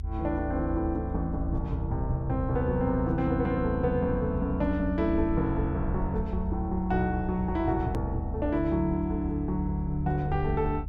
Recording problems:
rumble; below 78 Hz, SNR 6 dB
click at an edit; at 8 s

